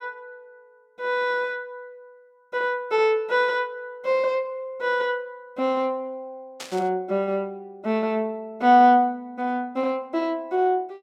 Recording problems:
static burst; at 6.5 s; peak -7 dB vs average level

